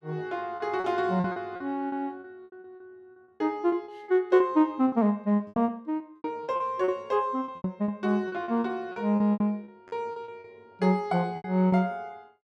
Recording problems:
packet loss; 16% of the sound replaced, filled with repeated pitch periods

